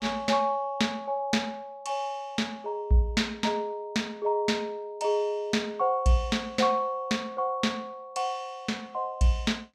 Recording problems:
none

